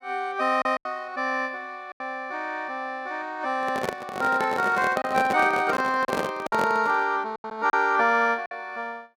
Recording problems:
lost packets; 5% of the sound replaced, filled with silence
microphone handling noise; from 3.5 to 7 s; peak +1 dB vs average level

